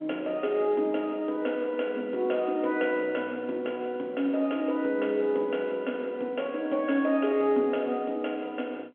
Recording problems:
telephone audio; 220 Hz to 3.4 kHz, G.711

